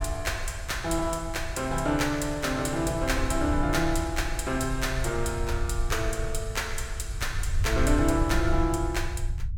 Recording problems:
low-frequency rumble; below 78 Hz, SNR 5 dB

